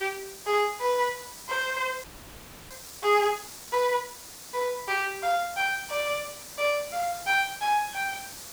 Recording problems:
background hiss; SNR 13 dB
audio freezing; at 2 s for 0.5 s

